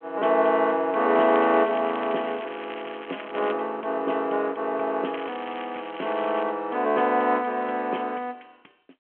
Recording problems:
telephone audio; 220 Hz to 3.3 kHz, G.726
crackling; from 1 to 3.5 s and from 5 to 6.5 s; loose cable, SNR 17 dB

